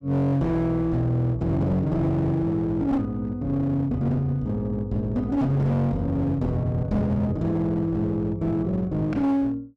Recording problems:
distorted audio; hard clipping, uneven, signal-to-distortion ratio 9 dB

